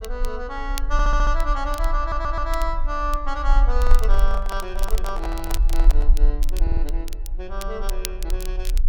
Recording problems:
rumble; below 40 Hz, strongest tone 18 Hz, SNR -4 dB
crackling; vinyl, SNR 11 dB
audio stuttering; at 1 s, at 2 s and at 6.5 s
handling noise; from 4 to 6 s; peak 0 dB vs average level

